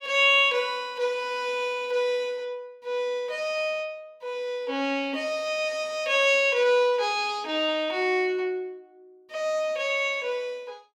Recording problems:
none

